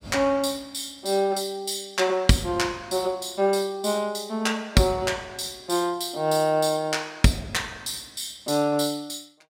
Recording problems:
none

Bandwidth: 16 kHz